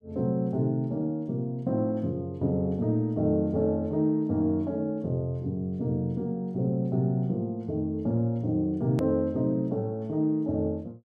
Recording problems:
edit click; at 9 s

